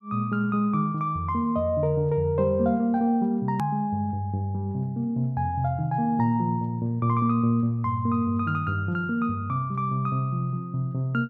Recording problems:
hard cut with a click; at 3.5 s

